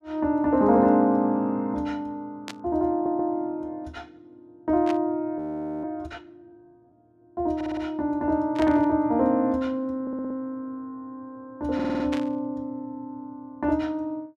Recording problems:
static burst; 4 times, first at 2.5 s; peak -5 dB vs average level
stutter; 4 times, first at 3 s
frozen audio; at 5.5 s

